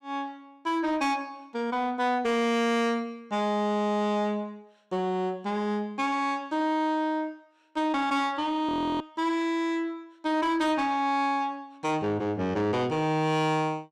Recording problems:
distorted audio; soft clipping, signal-to-distortion ratio 11 dB
audio freezing; at 8.5 s

